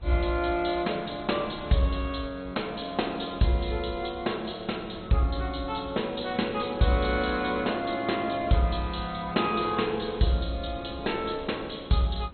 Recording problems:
lossy compression; MP2, log-spectral distance 8 dB, nothing above 4.2 kHz
wind on the microphone; below 430 Hz, SNR 20 dB

